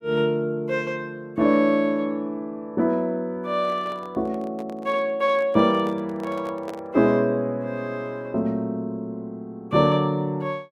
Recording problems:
handling noise; from 3.5 to 7 s; peak -8 dB vs average level

